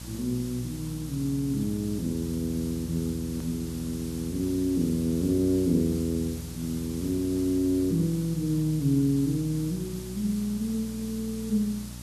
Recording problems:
hum; 60 Hz, harmonics up to 600 Hz, SNR 13 dB
hiss; slope +1 dB per octave, SNR 15 dB
hard cut with a click; at 3.5 s

